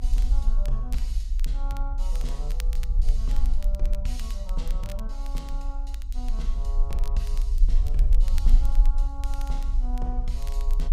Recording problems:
rumble; below 42 Hz, strongest tone 28 Hz, SNR -12 dB
crackling; vinyl, SNR 10 dB

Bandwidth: 15.5 kHz